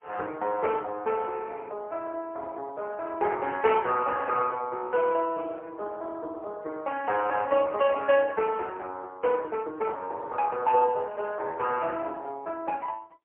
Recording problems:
phone line; 370 Hz to 3.1 kHz, AMR-NB, then MP3

